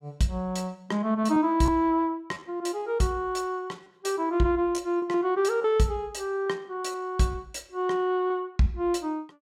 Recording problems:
lost packets; 4% of the sound replaced, filled with repeated pitch periods

